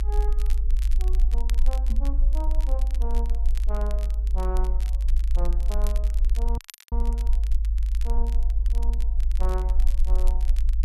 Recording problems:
hum; 50 Hz, harmonics up to 1.1 kHz, SNR 22 dB
rumble; below 52 Hz, SNR -14 dB
crackle; vinyl, SNR 9 dB
microphone thump; at 2 s; peak +5 dB vs average level
audio cutting out; at 6.5 s

